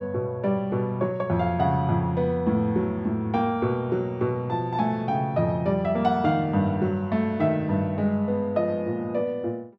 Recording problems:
none

